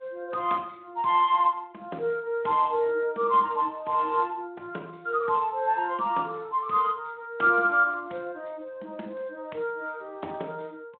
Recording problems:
phone line; 240 Hz to 3.5 kHz, Speex

